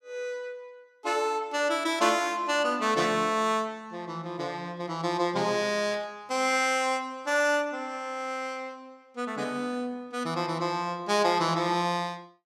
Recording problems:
burst of static; at 6 s; peak -13 dB vs average level

